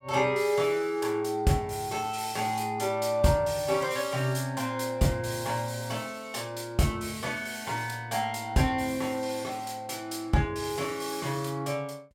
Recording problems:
none

